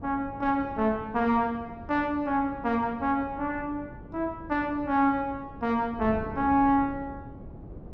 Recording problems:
wind noise; below 300 Hz, SNR 16 dB

